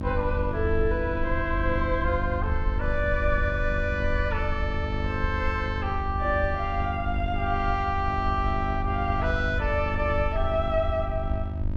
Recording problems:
electrical hum; 50 Hz, harmonics up to 950 Hz, SNR 7 dB
low-frequency rumble; below 80 Hz, SNR 4 dB

